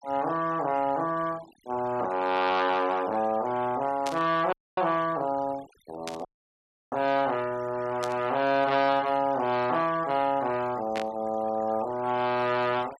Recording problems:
denoising artefacts; signal-to-artefact ratio 20 dB
burst of static; 4 times, first at 4 s; peak -5 dB vs average level
audio cutting out; at 4.5 s and at 6.5 s for 0.5 s

